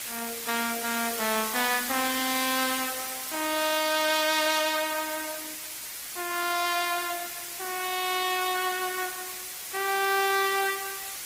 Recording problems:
codec artefacts; Opus, log-spectral distance 10 dB, nothing above 15.5 kHz
hiss; slope +2 dB per octave, SNR 5 dB

